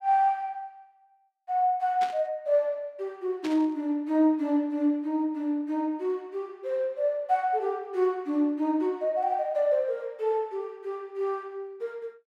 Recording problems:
burst of static; at 2 s and at 3.5 s; peak -7 dB vs average level

